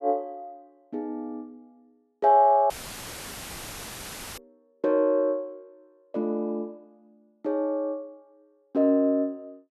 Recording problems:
dropout; at 2.5 s for 1.5 s; filled with static

